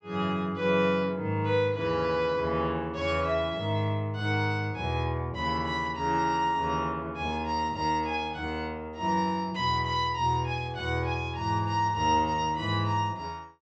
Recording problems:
low-pass filter; nothing above 8 kHz

